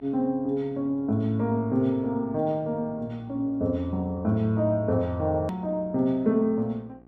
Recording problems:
hum; 60 Hz, harmonics up to 1.6 kHz, SNR 25 dB
click at an edit; at 5.5 s

